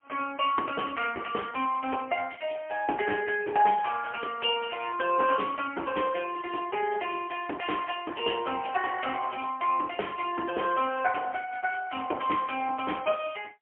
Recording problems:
telephone audio; 260 Hz to 3.2 kHz, AMR-NB, then MP3

